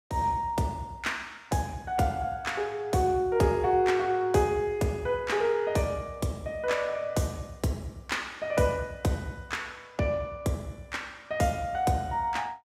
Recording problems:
none

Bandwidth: 16 kHz